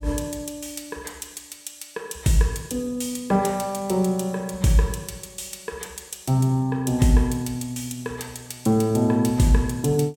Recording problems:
none

